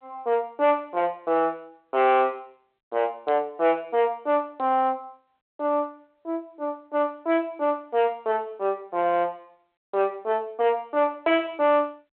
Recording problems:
telephone audio; 300 Hz to 2.5 kHz, G.726
distorted audio; soft clipping, signal-to-distortion ratio 12 dB

